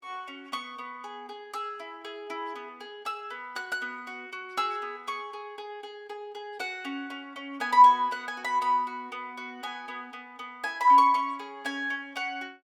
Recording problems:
none

